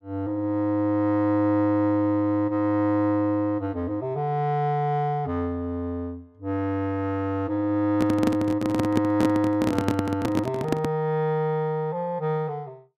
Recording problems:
microphone handling noise; from 8 to 11 s; peak +4 dB vs average level

